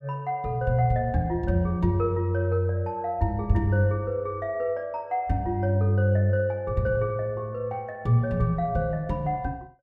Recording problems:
none

